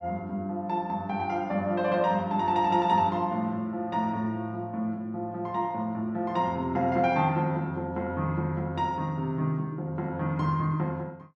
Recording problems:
none

